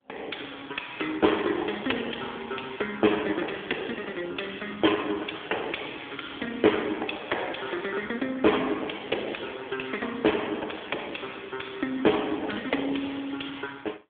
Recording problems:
phone line; 260 Hz to 3.4 kHz, AMR-NB

